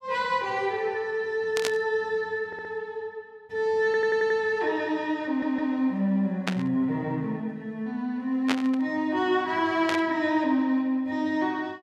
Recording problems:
static burst; 4 times, first at 1.5 s; peak +3 dB vs average level
stutter; at 2.5 s, at 4 s and at 5.5 s

